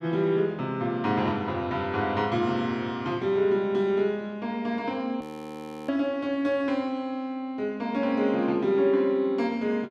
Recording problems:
audio freezing; at 5 s for 0.5 s

